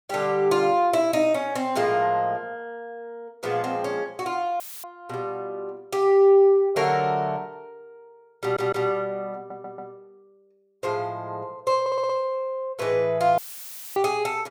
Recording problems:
audio cutting out; at 4.5 s and at 13 s for 0.5 s; filled with static
audio stuttering; at 8.5 s, at 9.5 s and at 12 s

